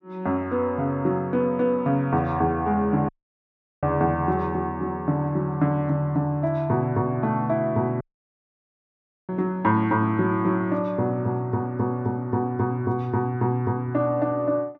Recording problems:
dropout; at 3 s for 0.5 s and at 8 s for 1.5 s

